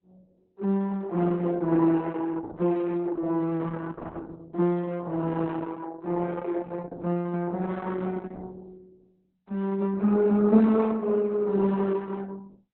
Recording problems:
lossy codec; Opus, log-spectral distance 3 dB, nothing above 4 kHz

